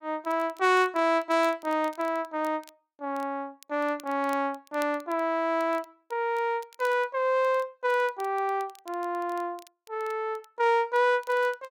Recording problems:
crackle; vinyl, SNR 26 dB

